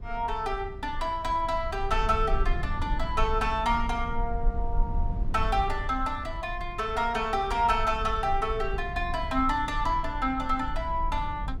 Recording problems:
rumble; below 52 Hz, SNR 7 dB

